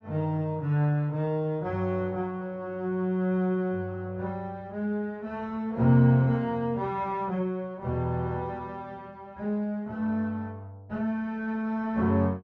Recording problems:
none

